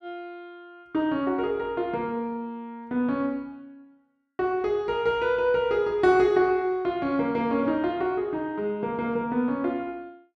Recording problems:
none

